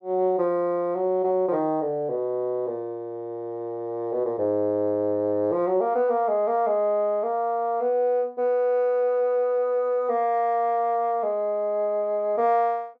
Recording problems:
none

